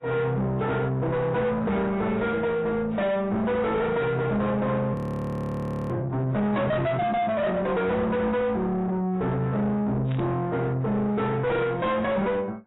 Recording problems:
lossy codec; AAC, log-spectral distance 2 dB, nothing above 13.1 kHz
distorted audio; soft clipping, signal-to-distortion ratio 6 dB
frozen audio; at 5 s for 1 s
static burst; at 10 s; peak -13 dB vs average level

